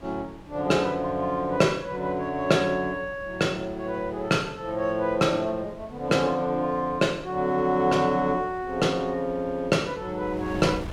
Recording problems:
wind on the microphone; below 550 Hz, SNR 20 dB

